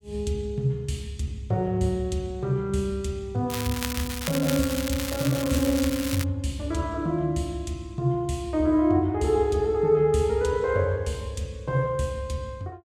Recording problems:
crackling; from 3.5 to 6 s; loose cable, SNR 7 dB

